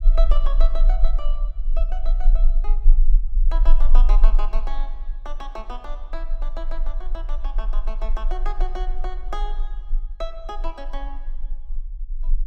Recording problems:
low-frequency rumble; below 30 Hz, strongest tone 24 Hz, SNR -12 dB

